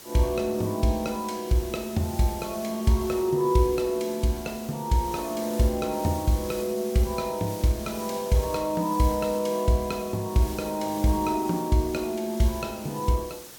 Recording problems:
hiss; SNR 15 dB

